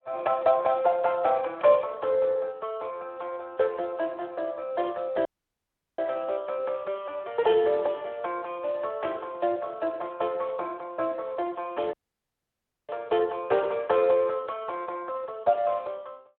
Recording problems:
telephone audio; 300 Hz to 3.5 kHz, Speex
dropout; at 5.5 s for 0.5 s and at 12 s for 1 s

